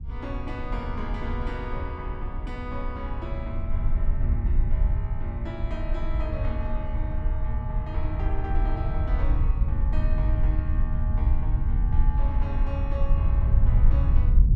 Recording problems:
rumble; below 72 Hz, SNR -10 dB

